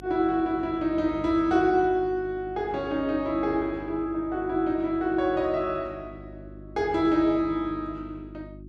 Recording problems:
electrical hum; 50 Hz, harmonics up to 350 Hz, SNR 18 dB

